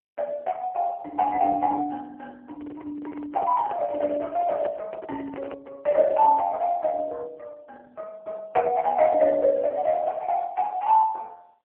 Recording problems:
telephone audio; 320 Hz to 3.8 kHz, AMR-NB
handling noise; from 2.5 to 6.5 s; peak -11 dB vs average level

